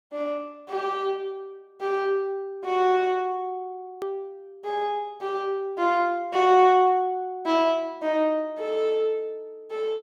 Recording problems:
edit click; at 4 s

